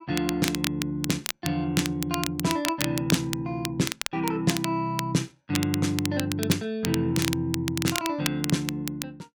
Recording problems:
crackle; vinyl, SNR 5 dB

